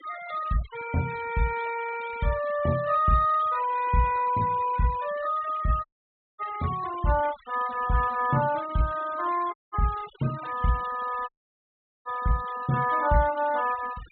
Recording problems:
treble cut off; nothing above 4 kHz
denoising artefacts; signal-to-artefact ratio 19 dB
dropout; at 6 s for 0.5 s, at 9.5 s and at 11 s for 1 s

